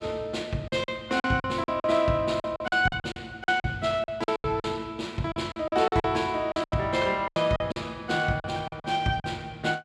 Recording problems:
lost packets; 14% of the sound replaced, filled with silence

